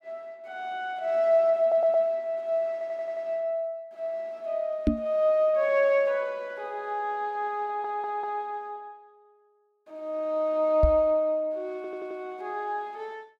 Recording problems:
audio stuttering; 4 times, first at 1.5 s
microphone thump; at 5 s and at 11 s; peak +8 dB vs average level

